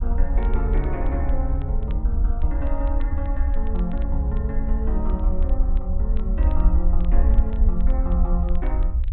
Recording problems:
treble cut off; nothing above 4 kHz
rumble; below 56 Hz, SNR -5 dB
crackle; vinyl, SNR 27 dB

